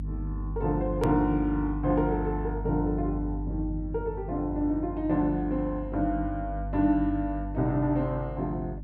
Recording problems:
hum; 50 Hz, harmonics up to 300 Hz, SNR 7 dB
click at an edit; at 1 s

